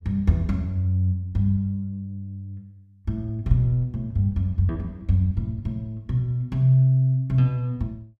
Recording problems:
none

